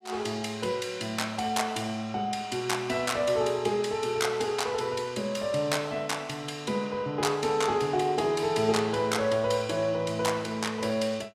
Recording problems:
none

